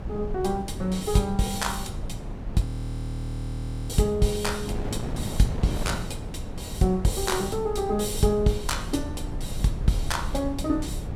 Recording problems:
low-frequency rumble; below 78 Hz, SNR 12 dB
wind on the microphone; below 280 Hz, SNR 9 dB
audio freezing; at 2.5 s for 1.5 s

